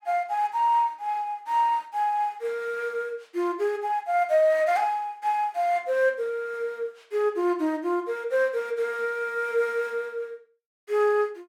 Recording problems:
none

